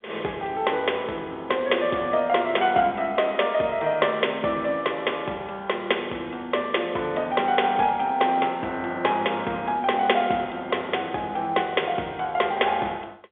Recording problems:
telephone audio; 280 Hz to 3.5 kHz, G.711

